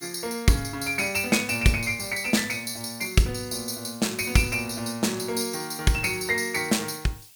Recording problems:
hiss; slope +5 dB per octave, SNR 24 dB

